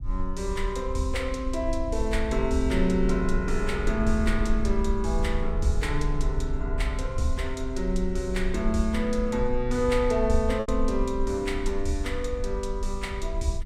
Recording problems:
low-frequency rumble; below 52 Hz, strongest tone 20 Hz, SNR 4 dB
packet loss; 0.6% of the sound replaced, filled with repeated pitch periods

